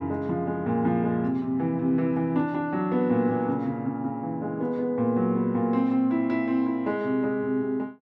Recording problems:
none

